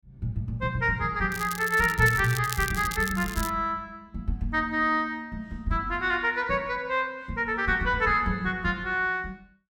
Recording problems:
crackling; from 1.5 to 3.5 s; loose cable, SNR 11 dB

